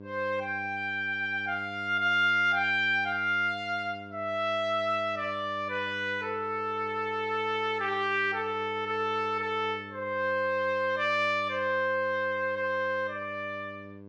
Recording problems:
hum; 50 Hz, harmonics up to 1.1 kHz, SNR 17 dB

